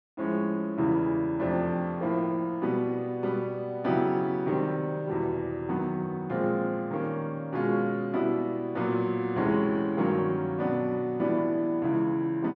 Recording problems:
none

